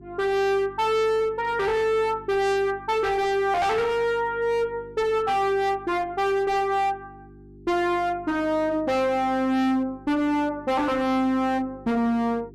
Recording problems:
distortion; hard clipping, signal-to-distortion ratio 7 dB
hum; 50 Hz, harmonics up to 400 Hz, SNR 23 dB

